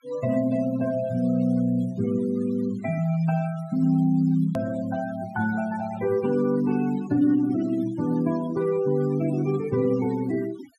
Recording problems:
denoising artefacts; signal-to-artefact ratio 20 dB
hard cut with a click; at 4.5 s

